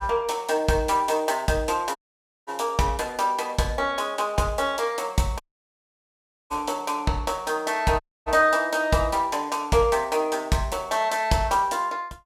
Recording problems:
dropout; at 2 s for 0.5 s, at 5.5 s for 1 s and at 8 s

